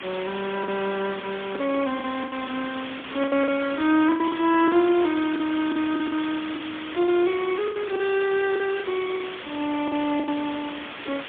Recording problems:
telephone audio; 220 Hz to 3.5 kHz, AMR-NB, then MP3
background hiss; SNR 10 dB
lost packets; 10% of the sound replaced, filled with the last packet

